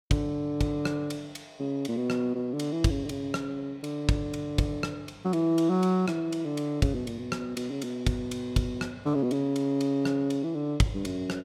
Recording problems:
none

